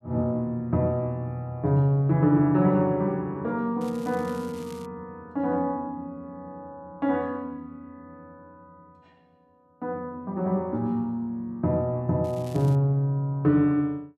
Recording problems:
crackling; from 4 to 5 s and at 12 s; loose cable, SNR 25 dB

